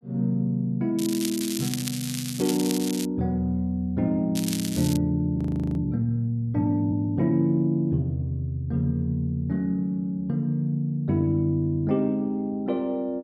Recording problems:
crackle; from 1 to 3 s and at 4.5 s; loose cable, SNR 8 dB
audio freezing; at 5.5 s

